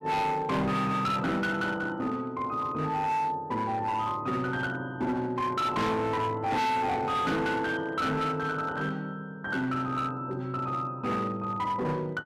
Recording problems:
distorted audio; hard clipping, signal-to-distortion ratio 7 dB

